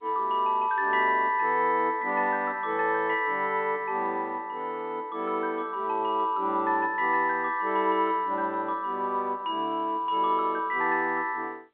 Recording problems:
telephone audio; 260 Hz to 3.8 kHz, G.711

